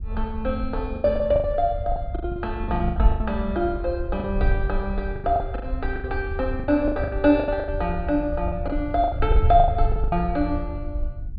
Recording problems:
treble missing; nothing above 4.7 kHz
wind on the microphone; below 72 Hz, SNR 5 dB
packet loss; 16% of the sound replaced, filled with the last packet

